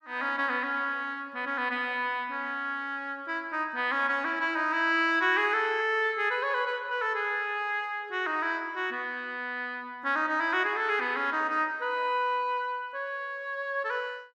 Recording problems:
none

